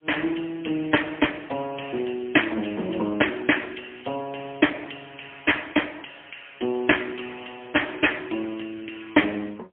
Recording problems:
phone line; 220 Hz to 3.3 kHz, AMR-NB, then MP3

